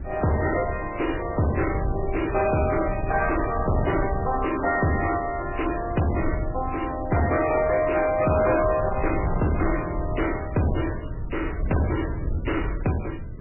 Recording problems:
lossy compression; MP3, log-spectral distance 6 dB, nothing above 2.6 kHz
distorted audio; hard clipping, signal-to-distortion ratio 10 dB
wind on the microphone; below 130 Hz, SNR 8 dB

